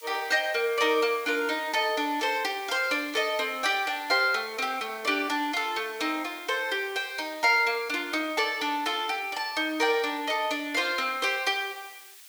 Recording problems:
background hiss; SNR 21 dB

